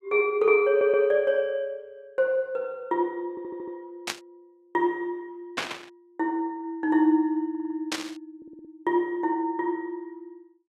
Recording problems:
audio stuttering; 4 times, first at 0.5 s
burst of static; at 4 s, at 5.5 s and at 8 s; peak +2 dB vs average level

